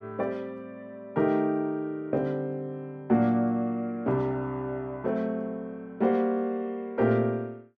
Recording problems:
none

